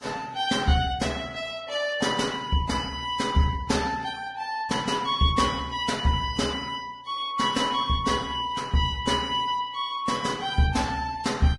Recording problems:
lossy codec; Vorbis, log-spectral distance 4 dB, nothing above 10.7 kHz

